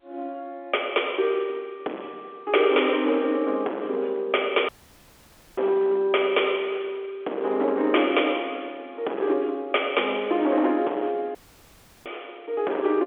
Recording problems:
phone line; 280 Hz to 3.4 kHz, G.711
distorted audio; hard clipping, signal-to-distortion ratio 9 dB
audio cutting out; at 4.5 s for 1 s and at 11 s for 0.5 s

